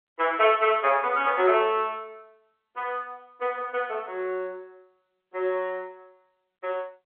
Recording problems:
phone line; 300 Hz to 3.4 kHz, G.711

